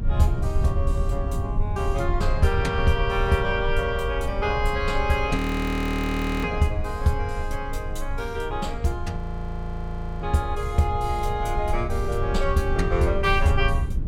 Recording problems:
low-frequency rumble; below 82 Hz, strongest tone 24 Hz, SNR 4 dB
audio freezing; at 5.5 s for 1 s and at 9 s for 1 s

